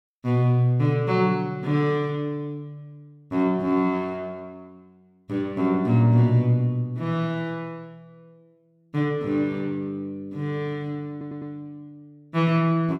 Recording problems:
stutter; at 11 s

